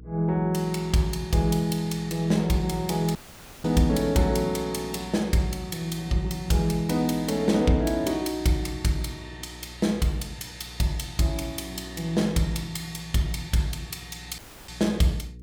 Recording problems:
electrical hum; 60 Hz, harmonics up to 480 Hz, SNR 19 dB
audio cutting out; at 3 s and at 14 s

